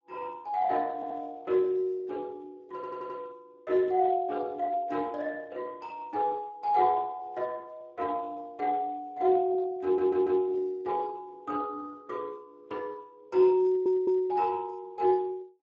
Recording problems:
lossy codec; Speex, log-spectral distance 2 dB
stutter; 4 times, first at 1 s

